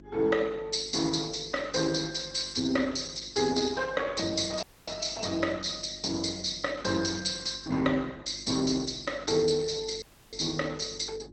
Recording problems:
lossy compression; Opus, log-spectral distance 10 dB, nothing above 8.2 kHz
hum; 50 Hz, harmonics up to 350 Hz, SNR 22 dB
dropout; at 4.5 s and at 10 s

